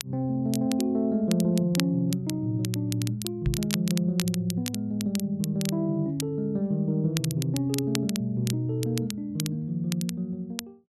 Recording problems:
crackling; vinyl, SNR 10 dB
knock on the microphone; at 3.5 s; peak +3 dB vs average level

